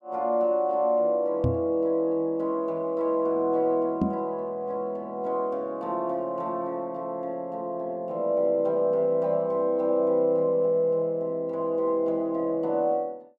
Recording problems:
microphone thump; at 1.5 s and at 4 s; peak +5 dB vs average level

